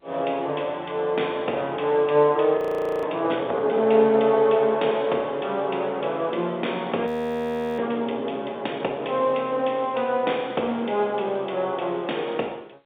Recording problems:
phone line; 320 Hz to 3.7 kHz, G.711
audio freezing; at 2.5 s and at 7 s for 0.5 s

